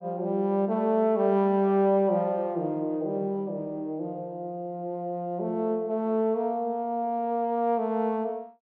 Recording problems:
none

